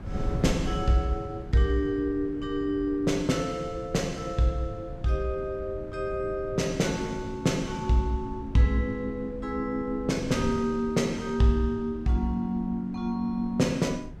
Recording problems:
wind on the microphone; below 170 Hz, SNR 12 dB

